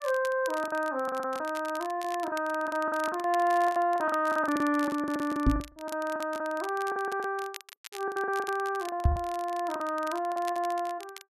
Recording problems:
crackling; vinyl, SNR 18 dB
lost packets; 15% of the sound replaced, filled with the last packet
microphone bump; at 5.5 s and at 9 s; peak +10 dB vs average level

